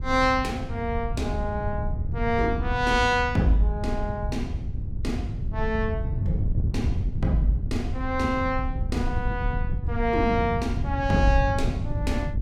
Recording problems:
wind noise; below 110 Hz, SNR 3 dB

